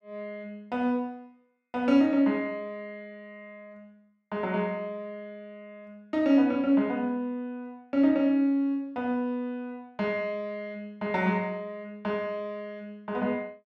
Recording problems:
none

